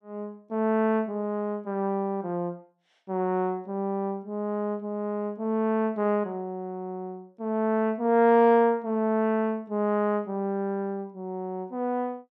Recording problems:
none

